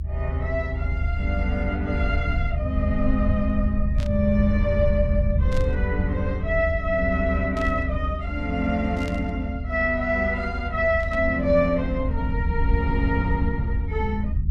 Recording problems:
low-frequency rumble; below 76 Hz, SNR 2 dB
burst of static; 5 times, first at 4 s; peak -10 dB vs average level

